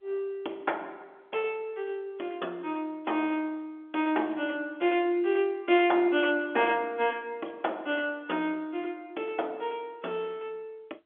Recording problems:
phone line; 260 Hz to 3.5 kHz, G.711

